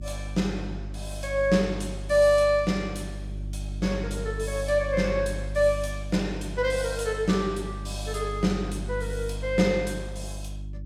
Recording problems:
electrical hum; 50 Hz, harmonics up to 350 Hz, SNR 9 dB

